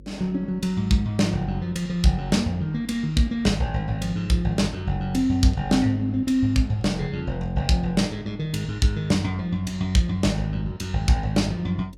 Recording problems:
hum; 50 Hz, harmonics up to 550 Hz, SNR 22 dB

